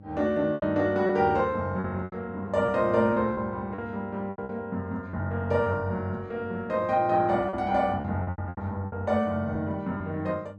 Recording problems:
electrical hum; 50 Hz, harmonics up to 800 Hz, SNR 19 dB
lost packets; 8% of the sound replaced, filled with repeated pitch periods

